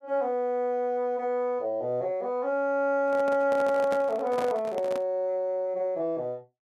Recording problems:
handling noise; from 3 to 5 s; peak -4 dB vs average level

